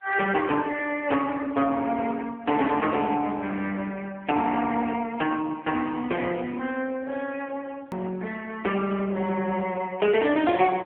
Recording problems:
telephone audio; 260 Hz to 3.3 kHz, AMR-NB
distorted audio; hard clipping, uneven, signal-to-distortion ratio 15 dB
click at an edit; at 8 s

